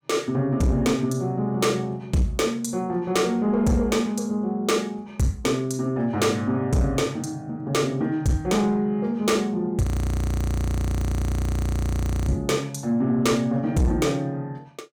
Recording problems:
distorted audio; soft clipping, signal-to-distortion ratio 11 dB
frozen audio; at 10 s for 2.5 s

